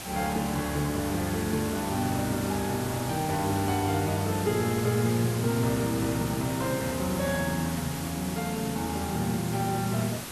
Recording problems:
background hiss; slope -3 dB per octave, SNR 8 dB

